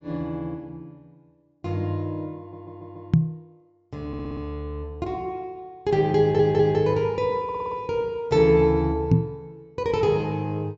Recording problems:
treble cut off; nothing above 8 kHz
audio stuttering; 4 times, first at 2.5 s
knock on the microphone; at 3 s and at 9 s; peak +9 dB vs average level

